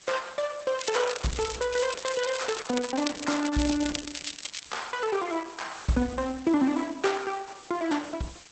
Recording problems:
lossy codec; Opus, log-spectral distance 14 dB, nothing above 8 kHz
hiss; slope +1 dB per octave, SNR 19 dB
crackling; from 1 to 4.5 s; loose cable, SNR 8 dB

